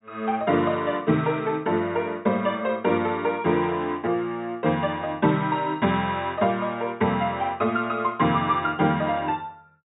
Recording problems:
treble cut off; nothing above 4 kHz

